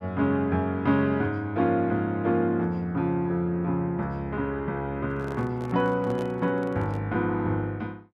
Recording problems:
microphone handling noise; from 5 to 7 s; peak -8 dB vs average level

